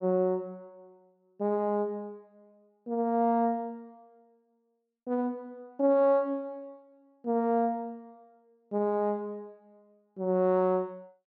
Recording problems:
none

